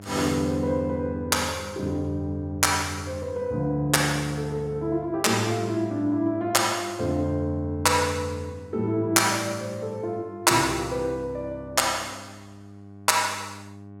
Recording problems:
electrical hum; 50 Hz, harmonics up to 1.1 kHz, SNR 20 dB

